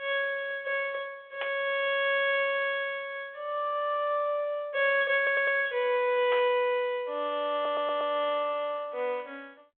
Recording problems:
phone line; 340 Hz to 3.4 kHz, G.726
static burst; at 1.5 s and at 6.5 s; peak -5 dB vs average level
stutter; at 5 s and at 7.5 s

